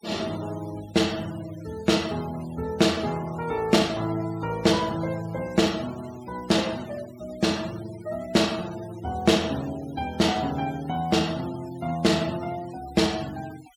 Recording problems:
noise reduction artefacts; signal-to-artefact ratio 18 dB

